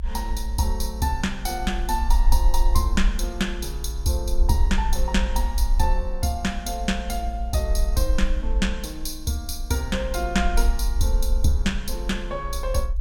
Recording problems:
rumble; below 54 Hz, SNR 1 dB

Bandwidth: 17.5 kHz